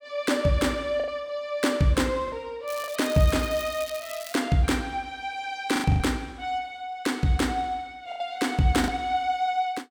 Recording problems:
lost packets; 4% of the sound replaced, filled with the last packet
crackling; from 2.5 to 4.5 s; loose cable, SNR 14 dB

